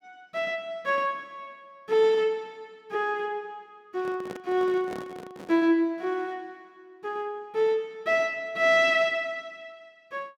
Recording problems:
microphone handling noise; from 4 to 5.5 s; peak -8 dB vs average level

